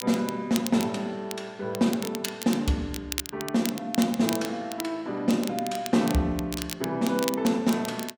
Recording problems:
crackle; vinyl, SNR 10 dB

